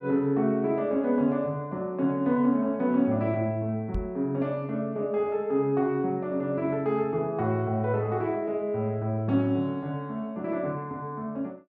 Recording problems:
microphone bump; at 4 s; peak -1 dB vs average level

